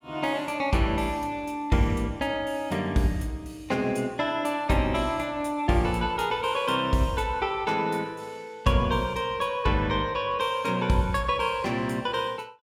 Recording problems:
none

